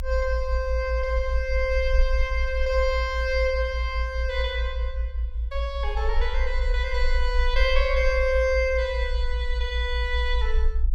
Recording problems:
low-frequency rumble; below 60 Hz, SNR 1 dB

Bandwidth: 17 kHz